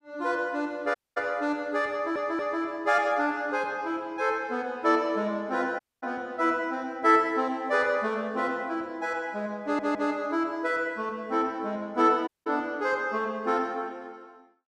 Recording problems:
dropout; at 1 s, at 6 s and at 12 s
audio stuttering; at 2 s and at 9.5 s

